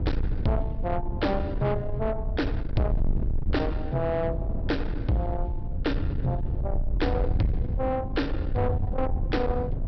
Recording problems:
low-pass filter; nothing above 5.5 kHz
distortion; soft clipping, signal-to-distortion ratio 7 dB
rumble; below 94 Hz, SNR 2 dB
wind noise; below 290 Hz, SNR 15 dB

